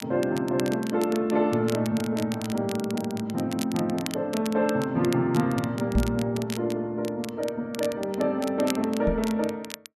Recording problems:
crackling; vinyl, SNR 14 dB
knock on the microphone; at 6 s and at 9 s; peak +4 dB vs average level

